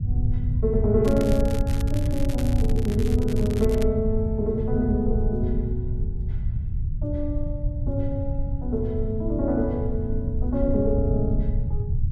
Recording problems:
rumble; below 110 Hz, SNR 0 dB
crackling; from 1 to 4 s; loose cable, SNR 15 dB

